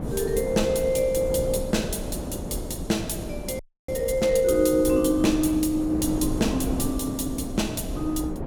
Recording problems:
wind noise; below 380 Hz, SNR 8 dB
frozen audio; at 3.5 s

